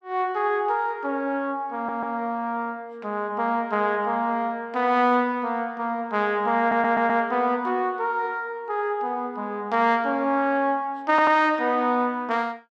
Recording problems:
stutter; at 1.5 s, at 6.5 s and at 11 s

